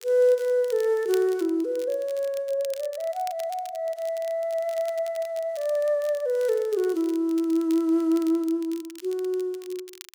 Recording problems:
crackle; vinyl, SNR 21 dB

